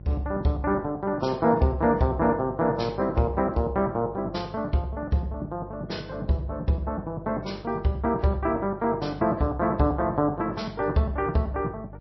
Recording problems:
lossy codec; MP2, then MP3, log-spectral distance 2 dB, nothing above 5.7 kHz
electrical hum; 50 Hz, harmonics up to 550 Hz, SNR 18 dB

